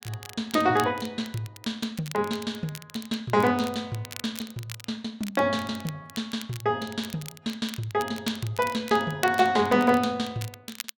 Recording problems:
crackle; vinyl, SNR 15 dB

